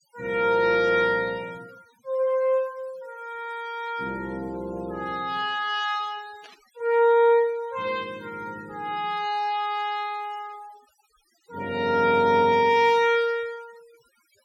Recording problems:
noise reduction artefacts; signal-to-artefact ratio 27 dB
static burst; at 6.5 s; peak -21 dB vs average level

